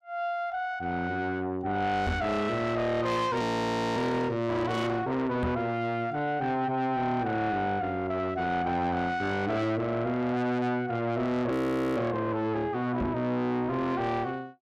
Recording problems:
distortion; soft clipping, signal-to-distortion ratio 6 dB
microphone bump; at 2 s, at 5.5 s and at 13 s; peak +3 dB vs average level
frozen audio; at 3.5 s for 0.5 s and at 12 s

